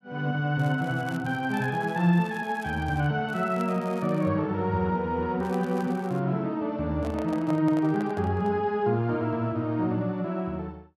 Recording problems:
crackle; from 0.5 to 3 s, at 3.5 s and at 5.5 s; loose cable, SNR 25 dB
handling noise; from 7 to 8.5 s; peak -7 dB vs average level

